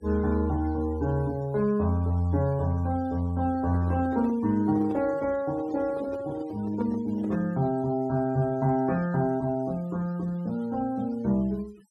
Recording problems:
denoising artefacts; signal-to-artefact ratio 24 dB
microphone handling noise; from 3.5 to 7.5 s; peak -7 dB vs average level

